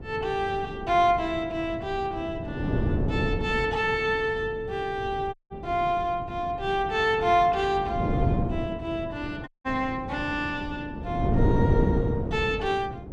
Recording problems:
wind on the microphone; below 310 Hz, SNR 4 dB
audio cutting out; at 5.5 s and at 9.5 s

